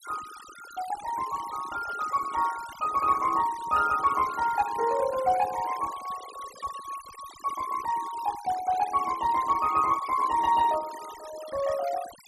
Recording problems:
denoising artefacts; signal-to-artefact ratio 16 dB

